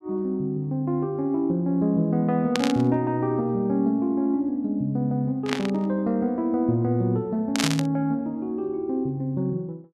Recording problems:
burst of static; at 2.5 s, at 5.5 s and at 7.5 s; peak +4 dB vs average level

